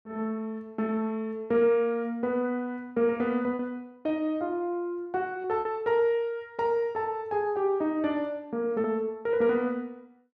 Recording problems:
lost packets; 2% of the sound replaced, filled with repeated pitch periods

